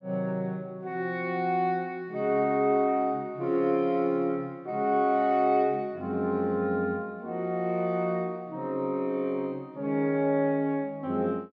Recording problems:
none

